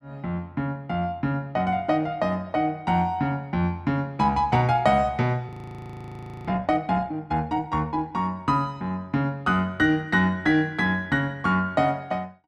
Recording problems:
frozen audio; at 5.5 s for 1 s

